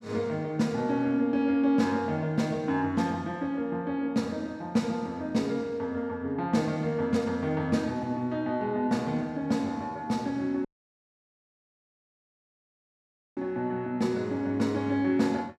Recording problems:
dropout; at 11 s for 2.5 s

